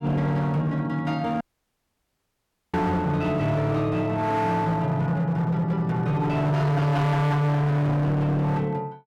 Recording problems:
distortion; hard clipping, signal-to-distortion ratio 7 dB
dropout; at 1.5 s for 1.5 s

